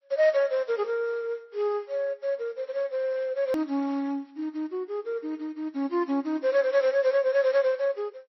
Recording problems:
codec artefacts; MP3, log-spectral distance 2 dB
edit click; at 3.5 s

